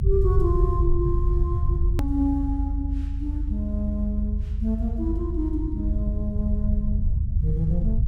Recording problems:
low-frequency rumble; below 78 Hz, SNR -3 dB
click at an edit; at 2 s

